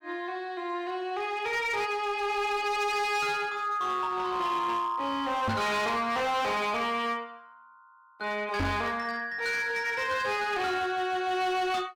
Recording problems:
distorted audio; hard clipping, signal-to-distortion ratio 10 dB
microphone bump; at 5.5 s and at 8.5 s; peak +3 dB vs average level

